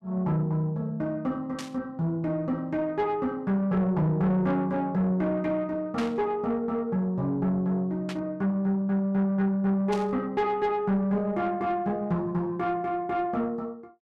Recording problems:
distortion; soft clipping, signal-to-distortion ratio 12 dB
static burst; 4 times, first at 1.5 s; peak -5 dB vs average level

